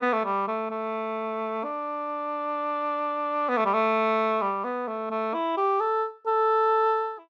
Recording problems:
none

